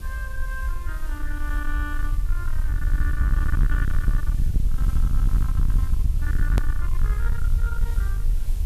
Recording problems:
distortion; soft clipping, signal-to-distortion ratio 6 dB
hum; 50 Hz, harmonics up to 500 Hz, SNR 13 dB
hiss; SNR 11 dB
rumble; below 58 Hz, SNR -11 dB
click at an edit; at 6.5 s

